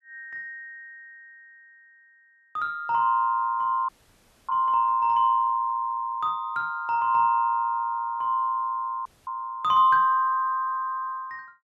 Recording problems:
frozen audio; at 4 s for 0.5 s and at 9 s

